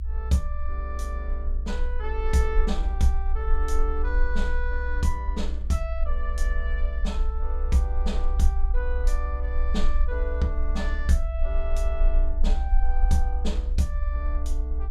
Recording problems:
low-frequency rumble; below 60 Hz, strongest tone 24 Hz, SNR -3 dB

